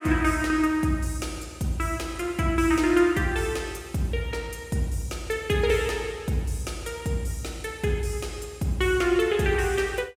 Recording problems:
none

